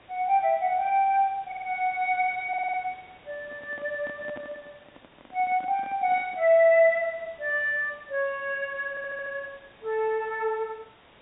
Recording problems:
treble cut off; nothing above 4 kHz
background hiss; SNR 27 dB
stutter; at 1.5 s, at 2.5 s and at 9 s
handling noise; from 3.5 to 6.5 s; peak -12 dB vs average level

